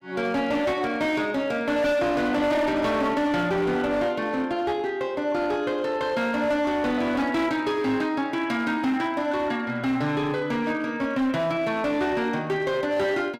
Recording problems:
distortion; hard clipping, signal-to-distortion ratio 10 dB

